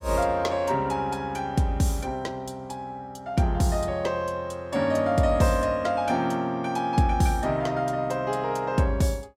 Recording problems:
none

